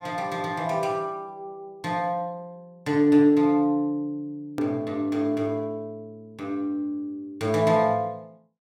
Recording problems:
click at an edit; at 4.5 s

